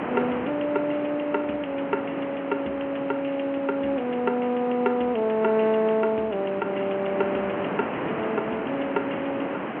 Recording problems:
telephone audio; 220 Hz to 3.3 kHz, G.711
background hiss; SNR 23 dB
wind noise; below 1.2 kHz, SNR 6 dB

